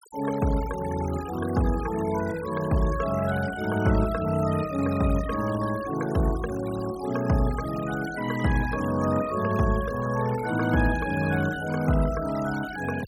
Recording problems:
noise reduction artefacts; signal-to-artefact ratio 15 dB

